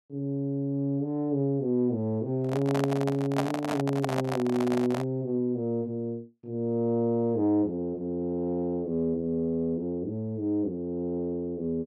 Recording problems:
microphone handling noise; from 2.5 to 5 s; peak +4 dB vs average level

